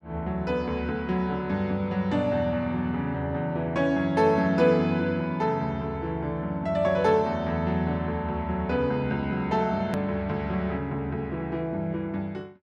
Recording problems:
edit click; at 10 s

